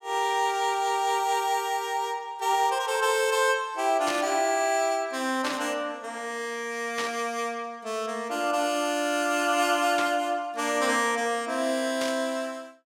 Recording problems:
burst of static; 5 times, first at 4 s; peak -2 dB vs average level

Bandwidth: 16.5 kHz